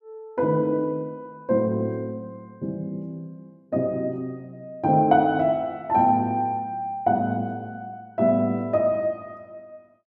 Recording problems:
none

